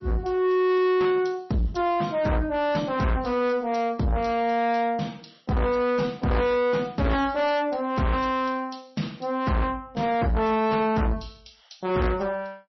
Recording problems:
lossy compression; MP3, log-spectral distance 4 dB, nothing above 5.8 kHz
distortion; soft clipping, signal-to-distortion ratio 7 dB

